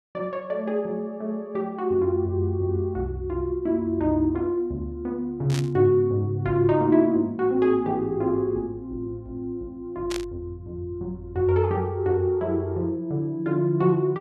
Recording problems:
static burst; at 5.5 s and at 10 s; peak -4 dB vs average level

